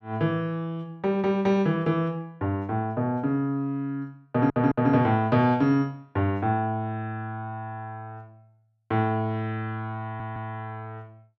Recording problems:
stutter; at 4.5 s and at 10 s

